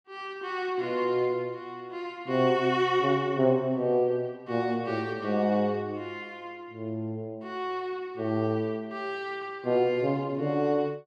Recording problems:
none

